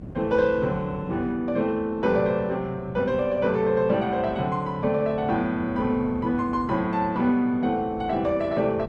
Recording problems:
codec artefacts; Opus, log-spectral distance 2 dB
wind on the microphone; below 270 Hz, SNR 16 dB

